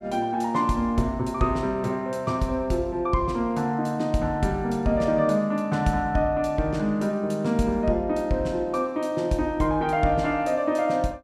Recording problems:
none

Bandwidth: 15 kHz